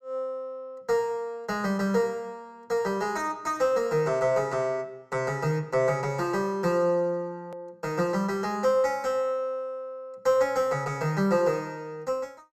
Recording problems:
hard cut with a click; at 7.5 s

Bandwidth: 14 kHz